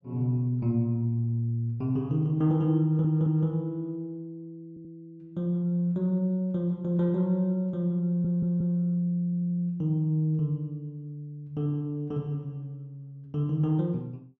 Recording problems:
audio stuttering; 4 times, first at 3 s

